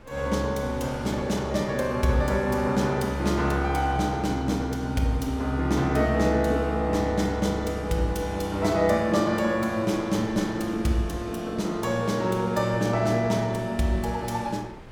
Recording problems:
wind on the microphone; below 680 Hz, SNR 22 dB

